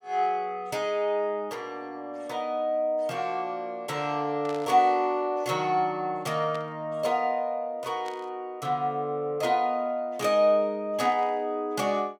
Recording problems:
static burst; 4 times, first at 4.5 s; peak -12 dB vs average level

